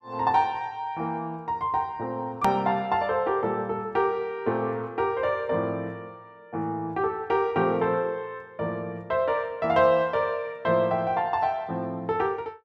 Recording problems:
hard cut with a click; at 2.5 s

